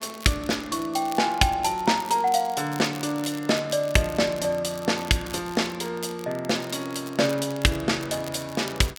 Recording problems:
crackle; vinyl, SNR 19 dB

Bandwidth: 17 kHz